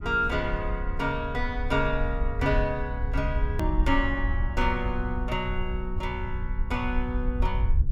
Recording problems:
rumble; below 62 Hz, SNR 2 dB
hard cut with a click; at 3.5 s

